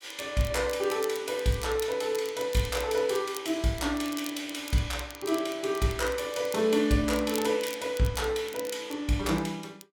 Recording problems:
crackle; vinyl, SNR 16 dB

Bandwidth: 17 kHz